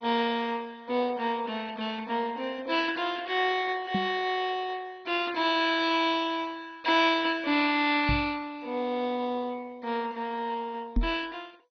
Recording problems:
lossy compression; MP2, log-spectral distance 4 dB, nothing above 6 kHz
microphone bump; at 4 s, at 8 s and at 11 s; peak +4 dB vs average level

